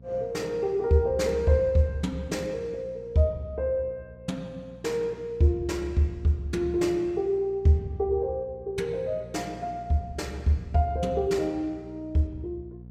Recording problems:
hum; 60 Hz, harmonics up to 480 Hz, SNR 21 dB

